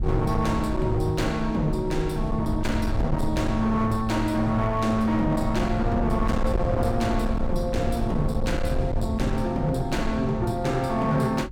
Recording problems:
distortion; hard clipping, signal-to-distortion ratio 11 dB
rumble; below 94 Hz, SNR 6 dB

